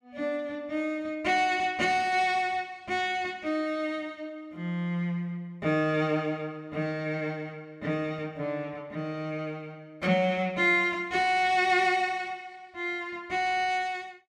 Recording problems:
static burst; at 10 s; peak -9 dB vs average level

